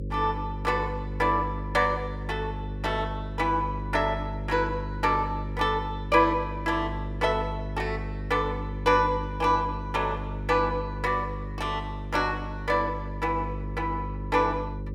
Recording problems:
hum; 50 Hz, harmonics up to 550 Hz, SNR 7 dB

